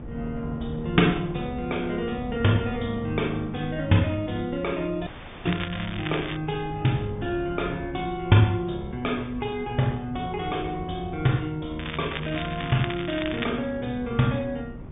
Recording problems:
treble cut off; nothing above 3.6 kHz
electrical hum; 50 Hz, harmonics up to 450 Hz, SNR 21 dB
wind on the microphone; below 230 Hz, SNR 14 dB
dropout; at 5 s
crackling; at 5.5 s and from 12 to 14 s; loose cable, SNR 9 dB

